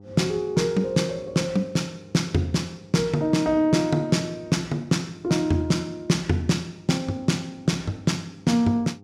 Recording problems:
hum; 50 Hz, harmonics up to 900 Hz, SNR 25 dB

